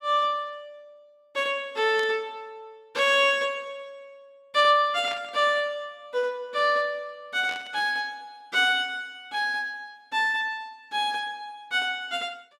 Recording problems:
static burst; at 2 s, at 5 s and at 7.5 s; peak -9 dB vs average level

